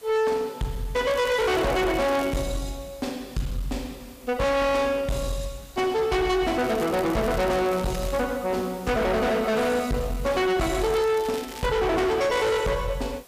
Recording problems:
distortion; hard clipping, uneven, signal-to-distortion ratio 6 dB
background hiss; slope -2 dB per octave, SNR 24 dB
crackling; from 1 to 2.5 s, from 6.5 to 8 s and from 11 to 12 s; loose cable, SNR 17 dB

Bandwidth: 15 kHz